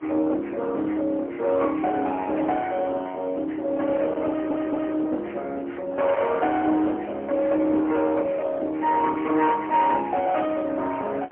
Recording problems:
telephone audio; 260 Hz to 2.2 kHz, AMR-NB, then MP3
distorted audio; hard clipping, uneven, signal-to-distortion ratio 11 dB
wind noise; below 1.1 kHz, SNR 17 dB
audio stuttering; at 4.5 s

